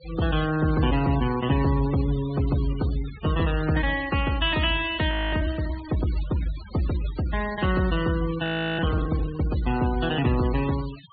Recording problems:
treble missing; nothing above 4.5 kHz
denoising artefacts; signal-to-artefact ratio 15 dB
frozen audio; at 5 s and at 8.5 s

